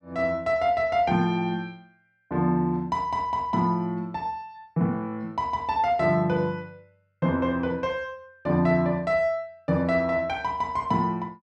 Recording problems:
none

